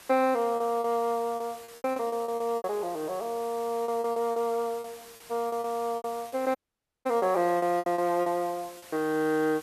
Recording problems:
hiss; slope -1 dB per octave, SNR 19 dB
lost packets; 13% of the sound replaced, filled with repeated pitch periods
audio cutting out; at 6.5 s for 0.5 s

